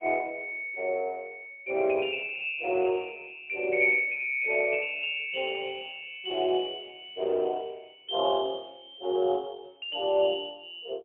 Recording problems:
phone line; 320 Hz to 3.7 kHz, AMR-NB, then MP3

